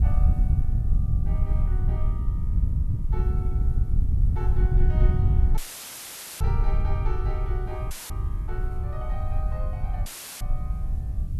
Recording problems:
background hiss; SNR 24 dB
wind noise; below 84 Hz, SNR -14 dB
audio cutting out; at 5.5 s for 1 s, at 8 s and at 10 s; filled with static

